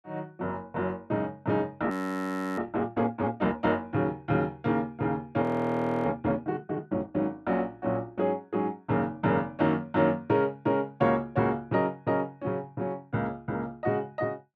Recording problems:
frozen audio; at 2 s for 0.5 s and at 5.5 s for 0.5 s

